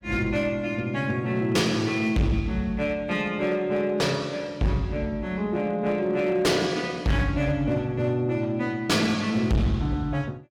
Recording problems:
distorted audio; hard clipping, signal-to-distortion ratio 8 dB

